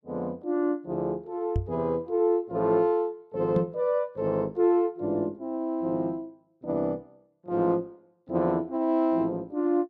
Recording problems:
knock on the microphone; at 1.5 s and at 3.5 s; peak +4 dB vs average level

